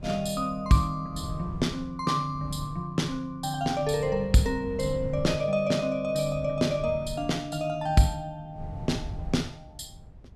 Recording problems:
wind on the microphone; below 140 Hz, SNR 14 dB

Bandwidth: 13 kHz